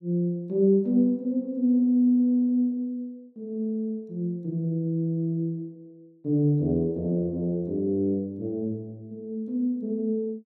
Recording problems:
none

